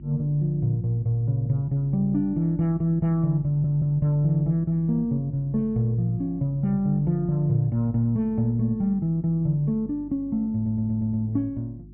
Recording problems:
treble cut off; nothing above 3 kHz
hum; 50 Hz, harmonics up to 350 Hz, SNR 19 dB
stutter; at 3.5 s and at 11 s

